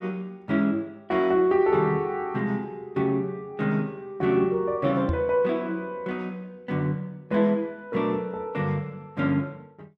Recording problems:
microphone bump; at 5 s; peak +1 dB vs average level

